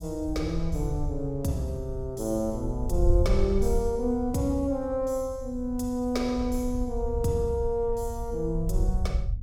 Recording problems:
rumble; below 72 Hz, SNR 4 dB

